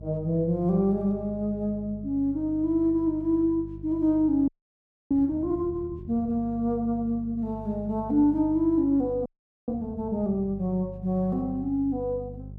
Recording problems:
hum; 50 Hz, harmonics up to 400 Hz, SNR 15 dB
frozen audio; at 4.5 s for 0.5 s and at 9.5 s

